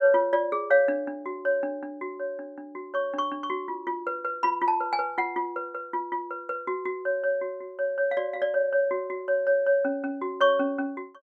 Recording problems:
none

